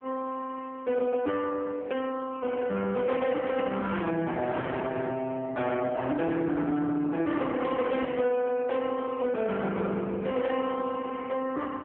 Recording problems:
phone line; 170 Hz to 3.5 kHz, AMR-NB
distorted audio; soft clipping, signal-to-distortion ratio 12 dB

